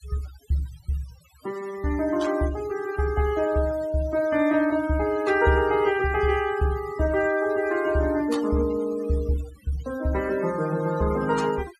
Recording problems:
denoising artefacts; signal-to-artefact ratio 17 dB

